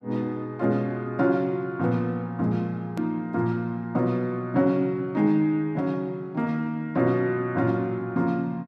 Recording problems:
hard cut with a click; at 3 s

